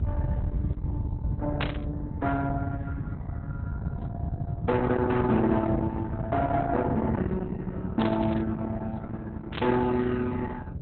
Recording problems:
codec artefacts; Opus, log-spectral distance 2 dB, nothing above 4 kHz
distortion; soft clipping, signal-to-distortion ratio 12 dB
hum; 60 Hz, harmonics up to 600 Hz, SNR 23 dB
low-frequency rumble; below 220 Hz, SNR 5 dB
burst of static; at 1.5 s, at 8 s and at 9.5 s; peak -1 dB vs average level

